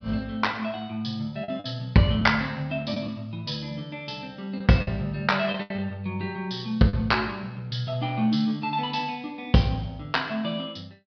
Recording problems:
treble cut off; nothing above 5.5 kHz
packet loss; 3% of the sound replaced, filled with the last packet

